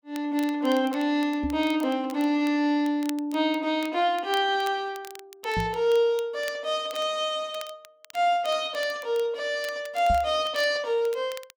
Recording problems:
crackling; vinyl, SNR 21 dB
microphone thump; at 1.5 s, at 5.5 s and at 10 s; peak 0 dB vs average level

